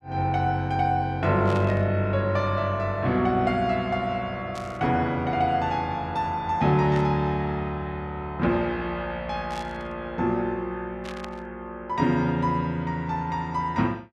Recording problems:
burst of static; 5 times, first at 1.5 s; peak -9 dB vs average level

